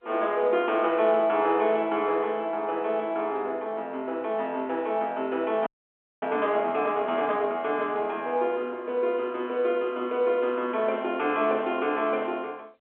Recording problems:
telephone audio; 300 Hz to 3.5 kHz, G.711
frozen audio; at 5.5 s for 0.5 s

